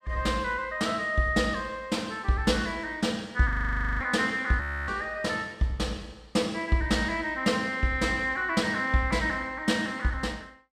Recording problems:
frozen audio; at 3.5 s for 0.5 s and at 4.5 s

